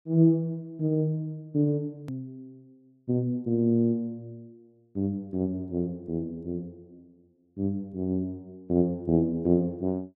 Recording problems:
edit click; at 2 s

